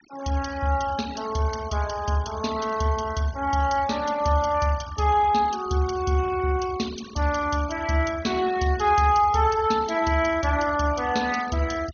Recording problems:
treble cut off; nothing above 6.5 kHz
denoising artefacts; signal-to-artefact ratio 18 dB

